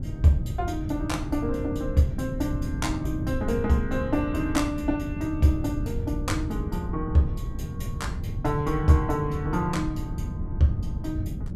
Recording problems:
wind noise; below 140 Hz, SNR 5 dB

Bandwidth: 15.5 kHz